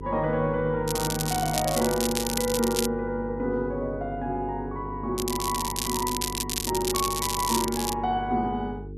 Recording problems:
hum; 50 Hz, harmonics up to 450 Hz, SNR 10 dB
crackling; from 1 to 3 s and from 5 to 8 s; loose cable, SNR 2 dB

